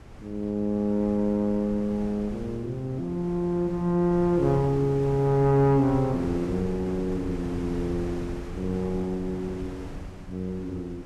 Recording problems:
wind noise; below 310 Hz, SNR 13 dB

